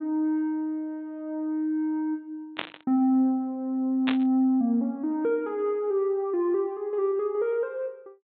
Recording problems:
low-pass filter; nothing above 4 kHz
burst of static; at 2.5 s and at 4 s; peak +1 dB vs average level

